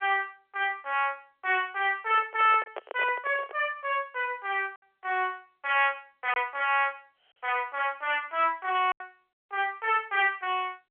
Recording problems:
phone line; 340 Hz to 3.4 kHz, G.711
distortion; hard clipping, uneven, signal-to-distortion ratio 9 dB
packet loss; 1.4% of the sound replaced, filled with silence
handling noise; from 2 to 3.5 s; peak -4 dB vs average level

